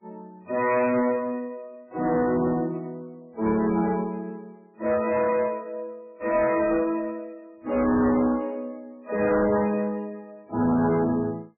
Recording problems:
lossy codec; MP3, log-spectral distance 2 dB, nothing above 2.5 kHz
distortion; soft clipping, signal-to-distortion ratio 10 dB

